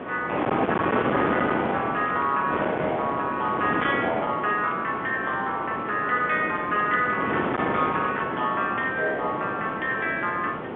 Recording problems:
phone line; 260 Hz to 3.6 kHz, G.711
distorted audio; hard clipping, uneven, signal-to-distortion ratio 14 dB
wind noise; below 1.1 kHz, SNR 3 dB

